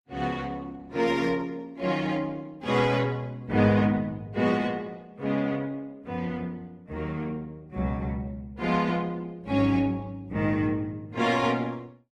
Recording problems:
codec artefacts; Opus, log-spectral distance 2 dB, nothing above 18.3 kHz

